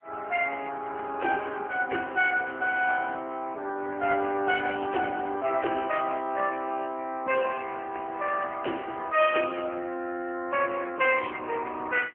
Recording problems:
telephone audio; 260 Hz to 2.9 kHz, AMR-NB

